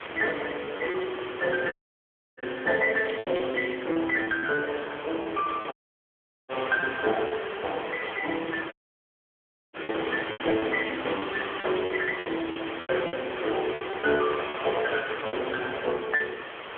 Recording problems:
phone line; 300 Hz to 3.1 kHz, AMR-NB
hiss; SNR 8 dB
packet loss; 11% of the sound replaced, filled with repeated pitch periods
dropout; at 1.5 s for 0.5 s, at 5.5 s for 1 s and at 8.5 s for 1 s
crackling; at 3 s and from 10 to 13 s; loose cable, SNR 13 dB

